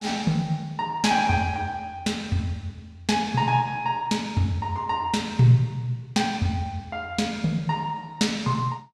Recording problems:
none

